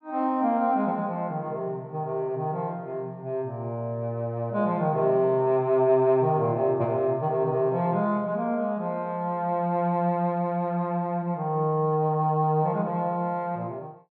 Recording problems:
none

